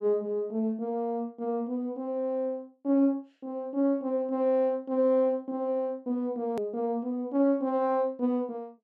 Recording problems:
hard cut with a click; at 6.5 s

